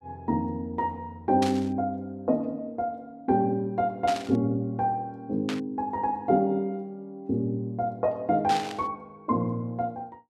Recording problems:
static burst; 4 times, first at 1.5 s; peak -2 dB vs average level

